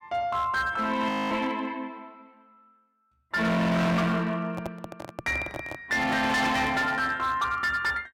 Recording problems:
distorted audio; hard clipping, signal-to-distortion ratio 7 dB
frozen audio; at 1 s
handling noise; from 4.5 to 7 s; peak -5 dB vs average level

